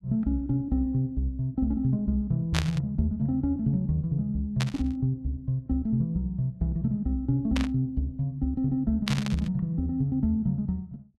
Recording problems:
burst of static; 4 times, first at 2.5 s; peak +2 dB vs average level

